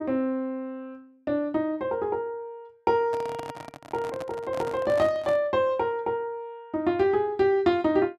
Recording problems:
microphone handling noise; from 3 to 5.5 s; peak -6 dB vs average level

